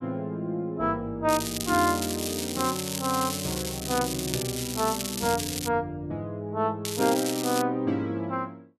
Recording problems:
crackle; from 1.5 to 5.5 s and at 7 s; loose cable, SNR 4 dB

